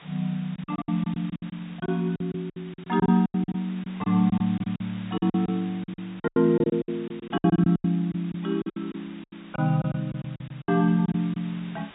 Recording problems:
treble missing; nothing above 4 kHz
background hiss; SNR 22 dB
packet loss; 17% of the sound replaced, filled with silence

